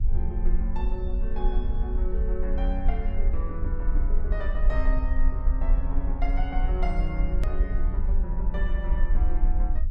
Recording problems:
electrical hum; 60 Hz, harmonics up to 540 Hz, SNR 20 dB
low-frequency rumble; below 46 Hz, strongest tone 20 Hz, SNR -8 dB
edit click; at 7.5 s

